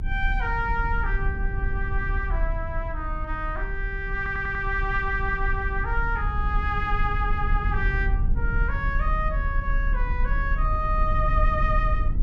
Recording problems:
rumble; below 58 Hz, strongest tone 34 Hz, SNR 0 dB
stutter; at 4 s

